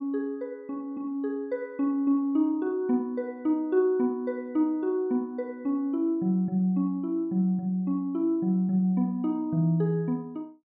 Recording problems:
none

